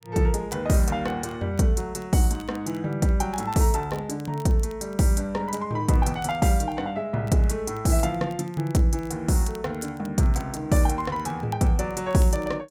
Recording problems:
crackle; vinyl, SNR 27 dB

